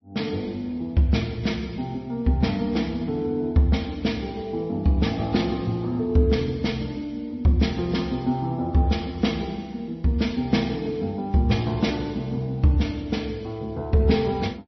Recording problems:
lossy codec; MP3, log-spectral distance 2 dB, nothing above 5.7 kHz

